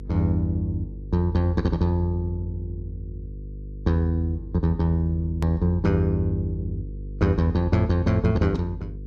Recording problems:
electrical hum; 50 Hz, harmonics up to 500 Hz, SNR 13 dB
edit click; at 5.5 s

